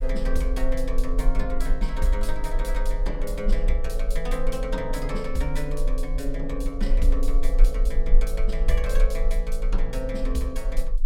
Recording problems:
rumble; below 36 Hz, strongest tone 26 Hz, SNR -3 dB

